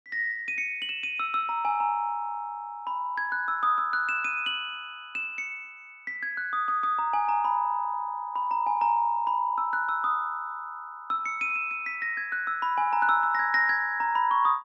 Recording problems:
none

